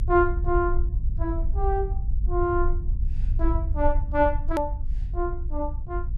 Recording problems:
rumble; below 58 Hz, strongest tone 22 Hz, SNR 1 dB
hard cut with a click; at 4.5 s

